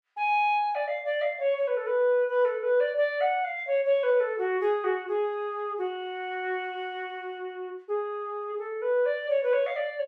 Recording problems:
none

